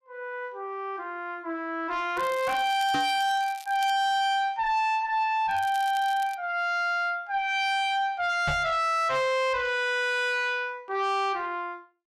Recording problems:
distorted audio; soft clipping, signal-to-distortion ratio 7 dB
crackling; from 2 to 4 s and at 5.5 s; loose cable, SNR 20 dB
knock on the microphone; at 3 s and at 8.5 s; peak 0 dB vs average level

